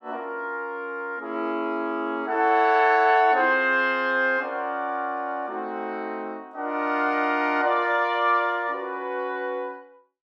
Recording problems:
none

